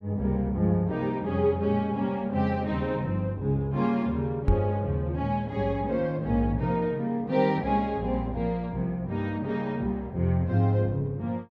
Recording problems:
knock on the microphone; at 4.5 s; peak +6 dB vs average level

